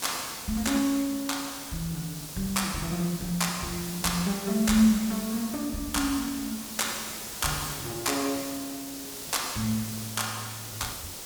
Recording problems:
background hiss; SNR 8 dB

